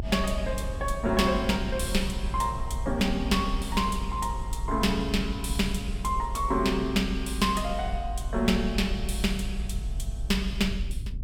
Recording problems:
low-frequency rumble; below 60 Hz, SNR 6 dB

